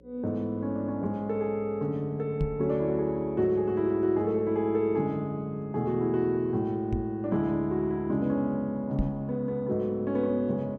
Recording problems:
electrical hum; 60 Hz, harmonics up to 540 Hz, SNR 28 dB
microphone thump; at 2.5 s, at 7 s and at 9 s; peak +2 dB vs average level

